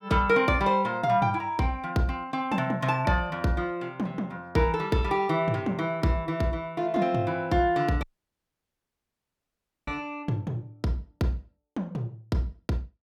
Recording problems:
dropout; at 8 s for 2 s

